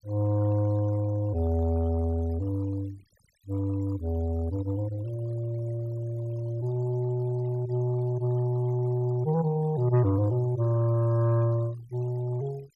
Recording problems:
denoising artefacts; signal-to-artefact ratio 25 dB

